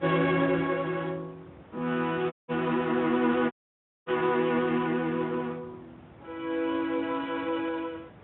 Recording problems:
treble missing; nothing above 3.4 kHz
lossy codec; Speex, log-spectral distance 3 dB
wind on the microphone; below 930 Hz, SNR 22 dB
dropout; at 2.5 s and at 3.5 s for 0.5 s

